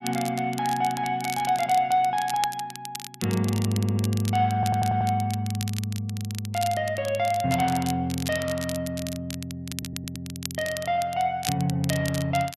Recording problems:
crackle; vinyl, SNR 11 dB
audio stuttering; at 3.5 s, at 4.5 s and at 9.5 s

